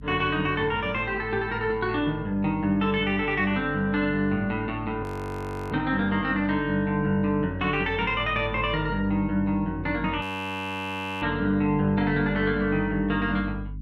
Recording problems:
hum; 50 Hz, harmonics up to 300 Hz, SNR 15 dB
frozen audio; at 5 s for 0.5 s and at 10 s for 1 s

